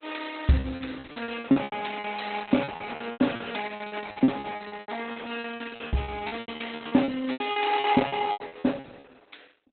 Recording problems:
lossy codec; Opus, log-spectral distance 7 dB, nothing above 4 kHz
packet loss; 21% of the sound replaced, filled with repeated pitch periods

